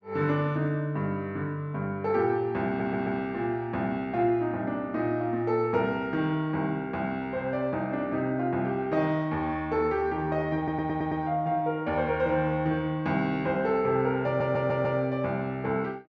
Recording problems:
audio stuttering; at 2.5 s, at 11 s and at 14 s

